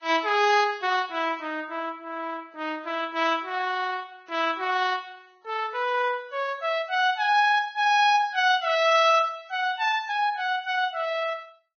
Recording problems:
lossy compression; Vorbis, log-spectral distance 2 dB, nothing above 5.3 kHz

